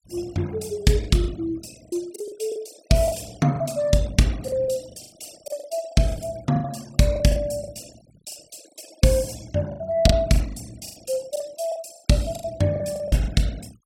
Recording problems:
noise reduction artefacts; signal-to-artefact ratio 21 dB
lost packets; 12% of the sound replaced, filled with the last packet

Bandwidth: 16.5 kHz